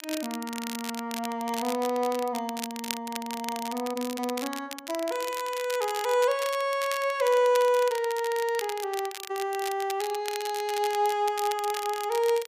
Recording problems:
crackle; vinyl, SNR 10 dB

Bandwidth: 15 kHz